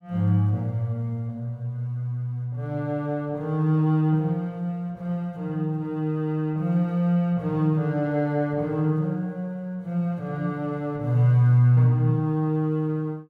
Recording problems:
none

